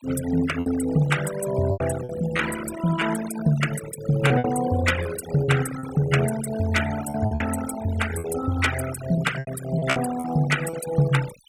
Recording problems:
denoising artefacts; signal-to-artefact ratio 10 dB
packet loss; 7% of the sound replaced, filled with repeated pitch periods

